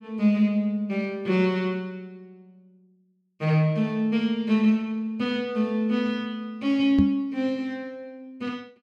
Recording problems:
microphone bump; at 7 s; peak +5 dB vs average level

